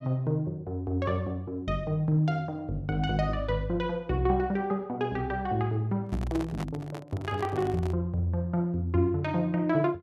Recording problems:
handling noise; from 6 to 8 s; peak -4 dB vs average level

